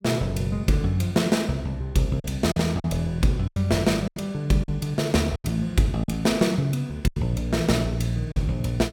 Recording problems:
packet loss; 6% of the sound replaced, filled with silence

